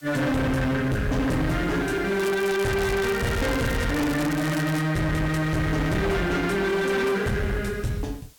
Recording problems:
distorted audio; hard clipping, signal-to-distortion ratio 7 dB
background hiss; slope 0 dB per octave, SNR 27 dB
crackling; from 2 to 5 s; loose cable, SNR 11 dB

